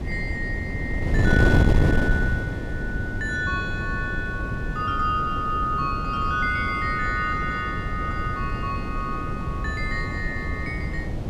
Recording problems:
wind on the microphone; below 240 Hz, SNR 0 dB

